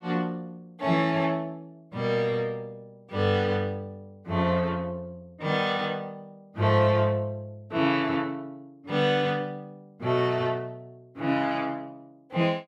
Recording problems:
none

